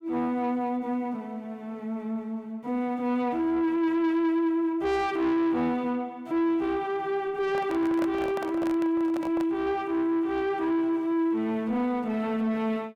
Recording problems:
distorted audio; soft clipping, signal-to-distortion ratio 11 dB
microphone handling noise; from 7.5 to 9.5 s; peak -1 dB vs average level

